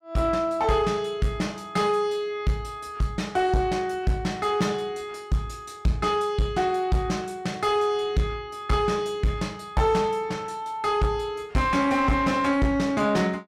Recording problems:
distortion; soft clipping, signal-to-distortion ratio 11 dB

